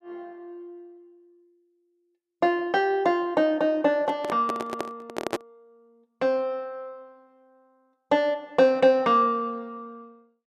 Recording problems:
handling noise; from 4 to 5.5 s; peak 0 dB vs average level

